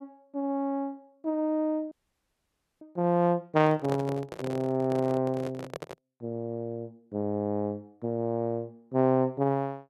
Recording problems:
frozen audio; at 2 s for 1 s
microphone handling noise; from 3.5 to 6 s; peak -4 dB vs average level

